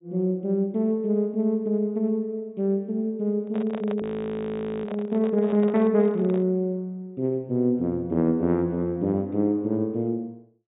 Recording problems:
treble missing; nothing above 4 kHz
microphone handling noise; from 3.5 to 6.5 s; peak -7 dB vs average level
frozen audio; at 4 s for 1 s

